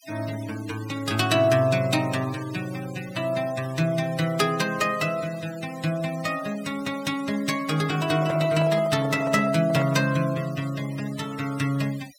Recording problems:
noise reduction artefacts; signal-to-artefact ratio 17 dB
microphone handling noise; from 8 to 10 s; peak -5 dB vs average level

